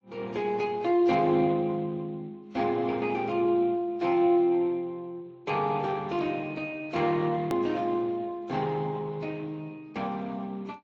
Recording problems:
codec artefacts; Speex, then AAC, log-spectral distance 2 dB, nothing above 18.9 kHz
edit click; at 7.5 s

